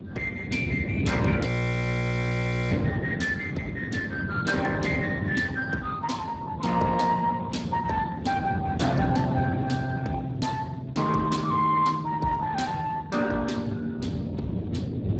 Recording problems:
lossy codec; Speex, log-spectral distance 4 dB, nothing above 7.8 kHz
wind noise; below 270 Hz, SNR 4 dB
frozen audio; at 1.5 s for 1 s

